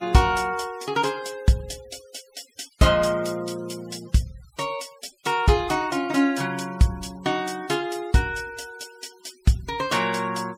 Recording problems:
noise reduction artefacts; signal-to-artefact ratio 22 dB

